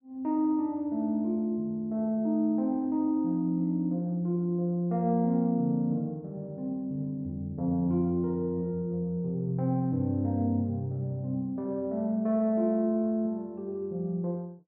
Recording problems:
none

